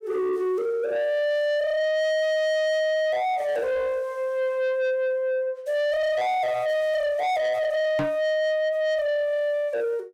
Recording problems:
distortion; soft clipping, signal-to-distortion ratio 7 dB
microphone thump; at 8 s; peak +3 dB vs average level

